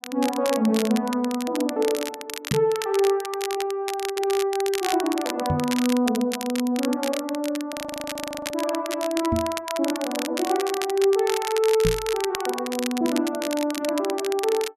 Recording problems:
crackling; vinyl, SNR 9 dB
knock on the microphone; 4 times, first at 2.5 s; peak +3 dB vs average level
audio freezing; at 7.5 s for 1 s

